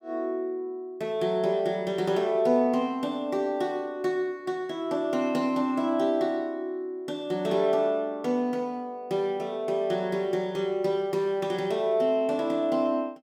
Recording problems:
none

